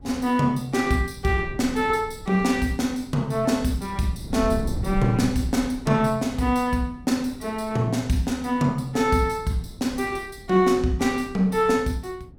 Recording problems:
wind noise; below 140 Hz, SNR 15 dB

